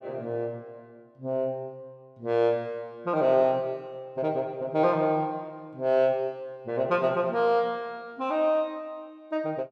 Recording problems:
none

